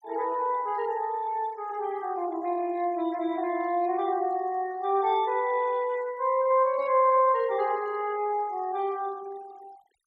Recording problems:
denoising artefacts; signal-to-artefact ratio 25 dB

